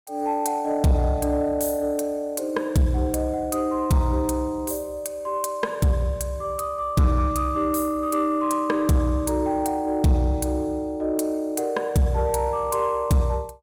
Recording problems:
distorted audio; soft clipping, signal-to-distortion ratio 12 dB

